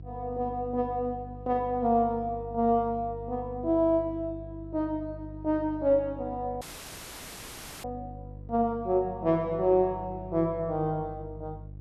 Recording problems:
mains hum; 50 Hz, harmonics up to 500 Hz, SNR 15 dB
dropout; at 6.5 s for 1 s

